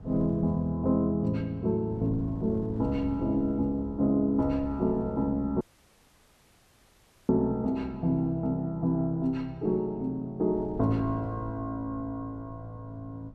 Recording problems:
wind noise; below 190 Hz, SNR 18 dB
audio cutting out; at 5.5 s for 1.5 s

